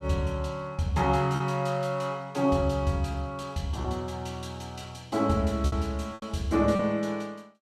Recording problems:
packet loss; 4% of the sound replaced, filled with repeated pitch periods

